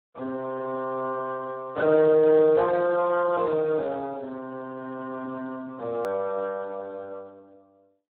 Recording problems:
phone line; 280 Hz to 2.3 kHz, Speex
click at an edit; at 6 s

